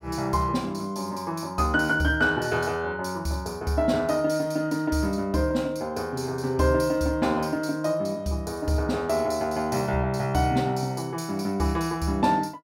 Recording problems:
none

